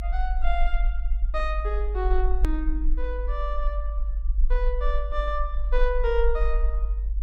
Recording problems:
low-frequency rumble; below 48 Hz, SNR -3 dB
edit click; at 2.5 s

